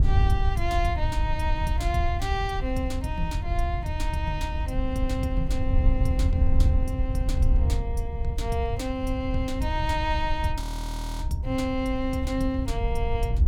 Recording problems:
wind noise; below 78 Hz, SNR -2 dB
frozen audio; at 11 s for 0.5 s

